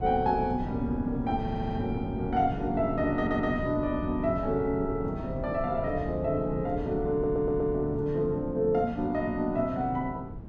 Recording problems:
wind noise; below 250 Hz, SNR 9 dB
audio stuttering; at 1.5 s, at 3 s and at 7 s

